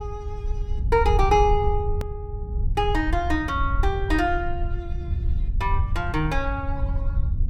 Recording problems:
low-frequency rumble; below 76 Hz, SNR 3 dB
edit click; at 2 s

